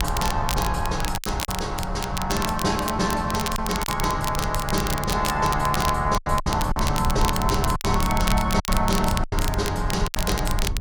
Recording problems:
low-frequency rumble; below 98 Hz, SNR 5 dB
crackling; vinyl, SNR 7 dB
packet loss; 6% of the sound replaced, filled with silence

